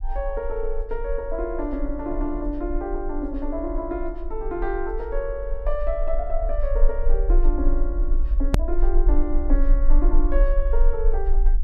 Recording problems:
rumble; below 38 Hz, strongest tone 20 Hz, SNR -2 dB
edit click; at 8.5 s

